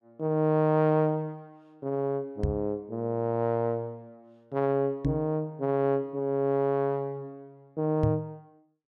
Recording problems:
microphone bump; at 2.5 s, at 5 s and at 8 s; peak +4 dB vs average level

